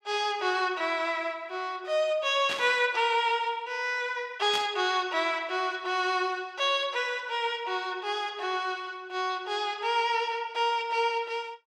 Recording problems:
burst of static; at 2.5 s and at 4.5 s; peak -2 dB vs average level

